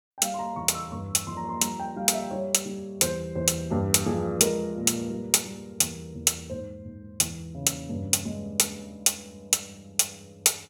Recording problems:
none

